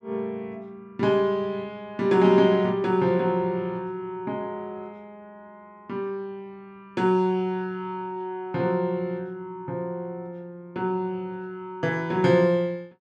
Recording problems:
none

